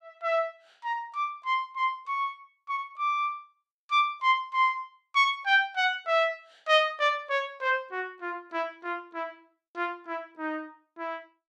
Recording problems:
none

